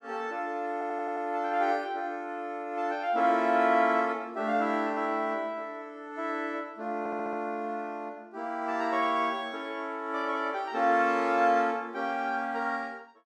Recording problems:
stutter; at 0.5 s and at 7 s

